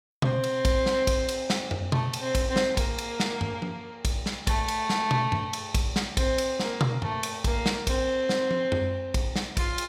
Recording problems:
none

